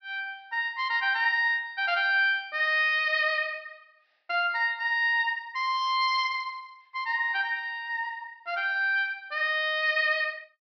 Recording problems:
low-pass filter; nothing above 5.5 kHz

